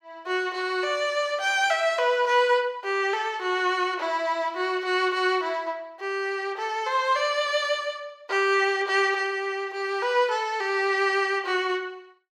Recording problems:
none

